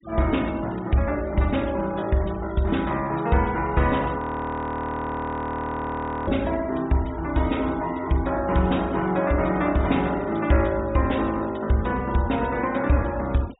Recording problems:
treble cut off; nothing above 4 kHz
denoising artefacts; signal-to-artefact ratio 21 dB
audio freezing; at 4 s for 2 s

